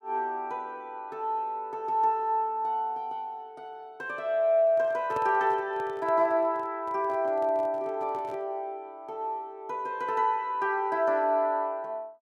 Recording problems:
handling noise; from 4.5 to 8.5 s; peak -6 dB vs average level

